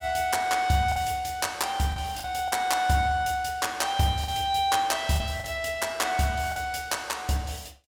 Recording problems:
packet loss; 4% of the sound replaced, filled with the last packet

